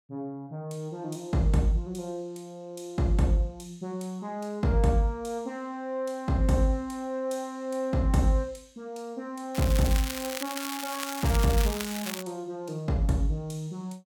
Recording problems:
crackle; from 9.5 to 12 s; loose cable, SNR 6 dB

